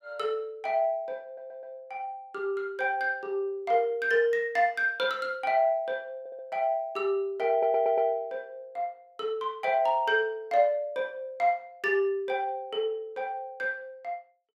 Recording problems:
audio stuttering; at 1.5 s, at 6 s and at 7.5 s

